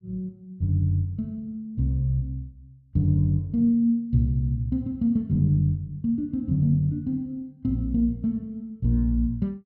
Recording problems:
none

